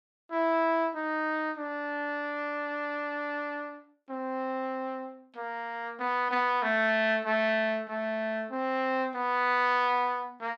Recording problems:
none

